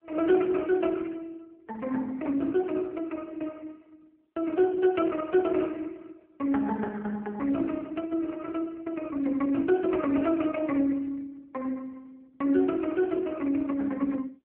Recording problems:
phone line; 240 Hz to 2.7 kHz, AMR-NB

